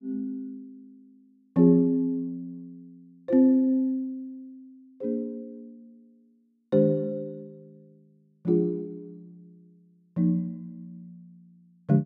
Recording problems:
none

